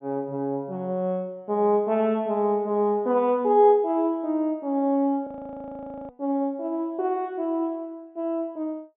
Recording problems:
low-pass filter; nothing above 3.7 kHz
frozen audio; at 5.5 s for 1 s

